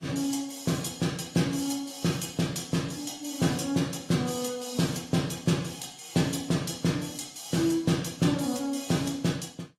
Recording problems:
codec artefacts; AAC, log-spectral distance 4 dB, nothing above 14.3 kHz

